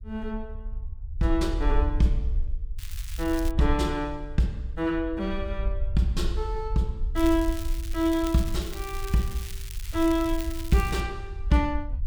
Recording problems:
rumble; below 58 Hz, SNR 6 dB
crackle; at 3 s and from 7 to 11 s; loose cable, SNR 14 dB

